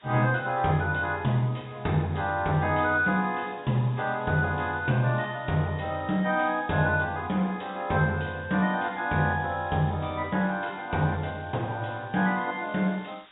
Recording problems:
treble cut off; nothing above 4 kHz
background hiss; SNR 27 dB

